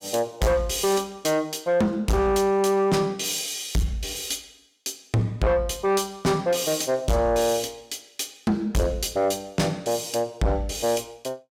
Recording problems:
distorted audio; soft clipping, signal-to-distortion ratio 6 dB

